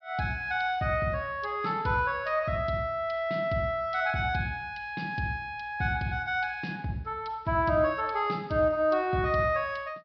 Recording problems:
treble missing; nothing above 5.5 kHz

